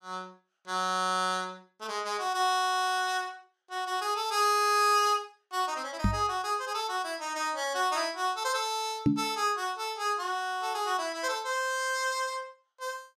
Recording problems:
knock on the microphone; at 6 s and at 9 s; peak +8 dB vs average level

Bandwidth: 15 kHz